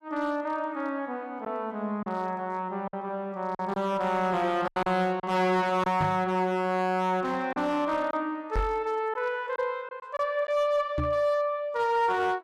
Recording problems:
distorted audio; hard clipping, signal-to-distortion ratio 11 dB
lost packets; 4% of the sound replaced, filled with silence
microphone bump; at 6 s, at 8.5 s and at 11 s; peak +2 dB vs average level

